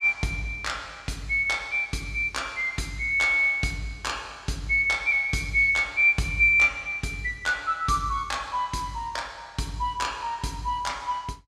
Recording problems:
none

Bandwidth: 15.5 kHz